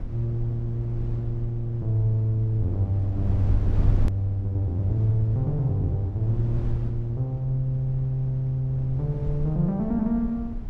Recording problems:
rumble; below 86 Hz, SNR 8 dB
click at an edit; at 4 s

